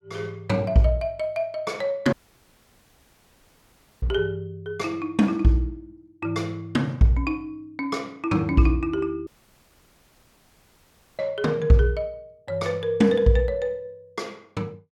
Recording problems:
dropout; at 2 s for 2 s and at 9.5 s for 2 s

